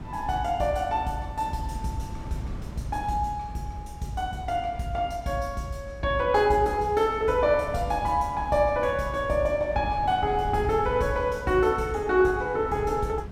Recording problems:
wind noise; below 210 Hz, SNR 15 dB

